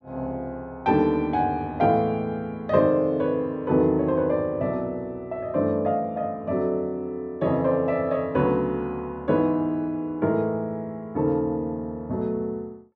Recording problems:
none

